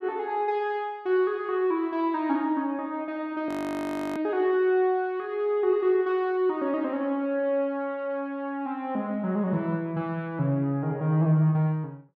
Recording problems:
frozen audio; at 3.5 s for 0.5 s

